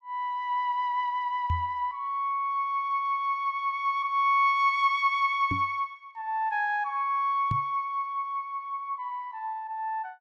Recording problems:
knock on the microphone; at 1.5 s, at 5.5 s and at 7.5 s; peak +1 dB vs average level

